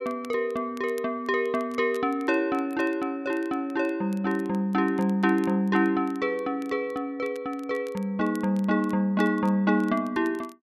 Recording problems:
crackling; vinyl, SNR 28 dB

